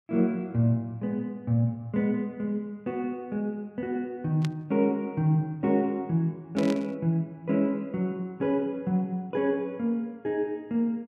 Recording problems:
static burst; at 4.5 s and at 6.5 s; peak -6 dB vs average level

